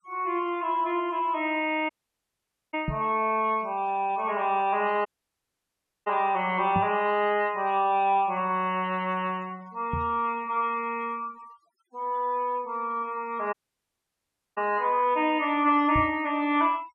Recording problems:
noise reduction artefacts; signal-to-artefact ratio 26 dB
dropout; at 2 s for 1 s, at 5 s for 1 s and at 14 s for 1 s
microphone bump; 4 times, first at 3 s; peak 0 dB vs average level

